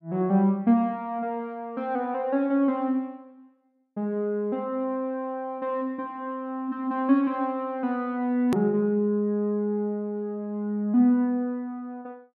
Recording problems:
click at an edit; at 8.5 s

